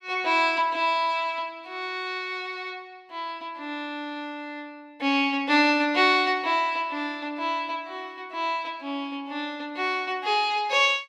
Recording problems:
none

